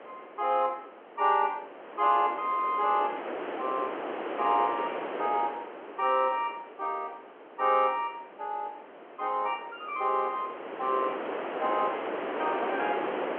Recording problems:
telephone audio; 320 Hz to 3.5 kHz, G.711
wind on the microphone; below 1.2 kHz, SNR 6 dB

